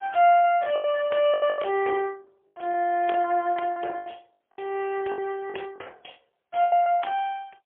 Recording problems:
phone line; 300 Hz to 2.5 kHz, AMR-NB, then MP3
lost packets; 12% of the sound replaced, filled with the last packet

